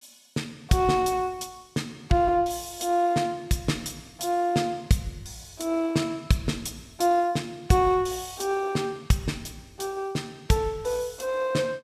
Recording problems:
none

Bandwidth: 14.5 kHz